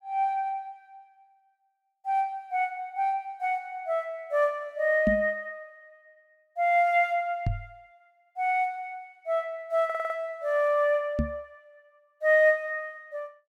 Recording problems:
microphone bump; at 5 s, at 7.5 s and at 11 s; peak +4 dB vs average level
audio stuttering; at 10 s

